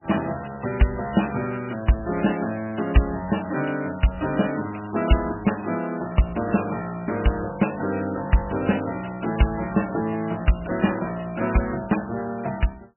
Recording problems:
codec artefacts; MP3, log-spectral distance 11 dB, nothing above 2.9 kHz

